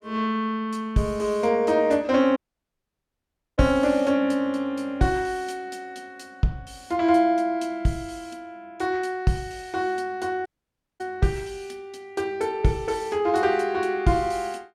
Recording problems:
audio cutting out; at 2.5 s for 1 s and at 10 s for 0.5 s

